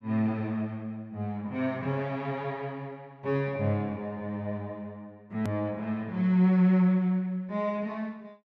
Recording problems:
edit click; at 5.5 s

